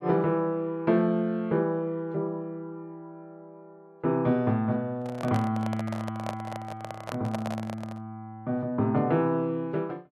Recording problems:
handling noise; from 5 to 8 s; peak -2 dB vs average level

